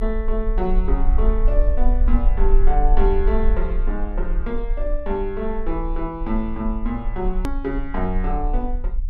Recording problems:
rumble; below 40 Hz, strongest tone 22 Hz, SNR -2 dB
hard cut with a click; at 7.5 s

